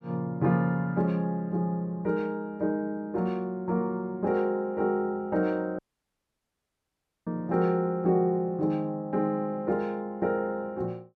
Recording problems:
dropout; at 6 s for 1.5 s

